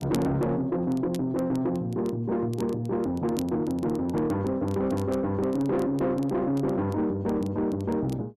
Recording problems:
distorted audio; soft clipping, signal-to-distortion ratio 10 dB
crackle; vinyl, SNR 24 dB

